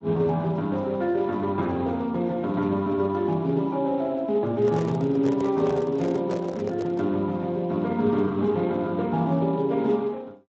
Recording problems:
lossy compression; Speex, log-spectral distance 2 dB
handling noise; from 4.5 to 7 s; peak -5 dB vs average level

